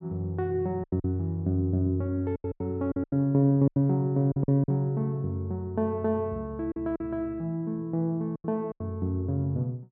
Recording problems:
packet loss; 9% of the sound replaced, filled with silence

